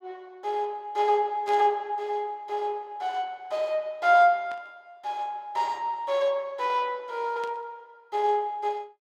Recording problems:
static burst; at 1.5 s, at 4.5 s and at 7.5 s; peak -13 dB vs average level

